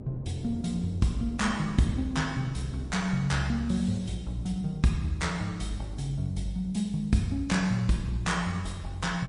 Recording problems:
lossy compression; MP3, log-spectral distance 2 dB, nothing above 10.4 kHz
hum; 50 Hz, harmonics up to 550 Hz, SNR 21 dB
wind noise; below 320 Hz, SNR 18 dB

